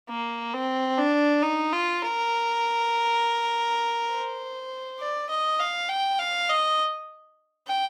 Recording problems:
none

